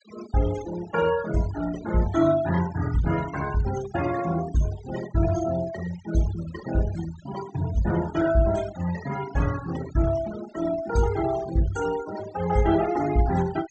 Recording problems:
treble cut off; nothing above 8 kHz
noise reduction artefacts; signal-to-artefact ratio 14 dB

